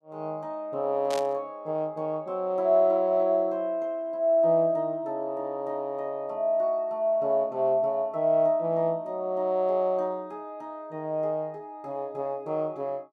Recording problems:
burst of static; at 1 s; peak -6 dB vs average level

